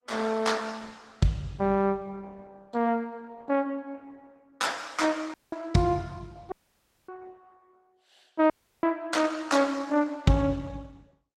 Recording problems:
codec artefacts; Opus, log-spectral distance 3 dB, nothing above 16.1 kHz
dropout; at 5.5 s, at 6.5 s for 0.5 s and at 8.5 s

